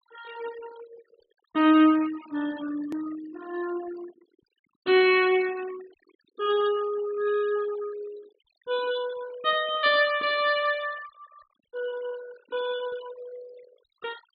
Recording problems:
treble missing; nothing above 4.9 kHz
noise reduction artefacts; signal-to-artefact ratio 19 dB
click at an edit; at 3 s

